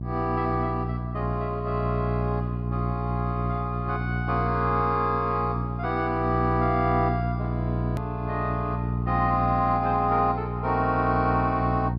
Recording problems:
low-pass filter; nothing above 5.5 kHz
hum; 60 Hz, harmonics up to 420 Hz, SNR 3 dB
hard cut with a click; at 8 s

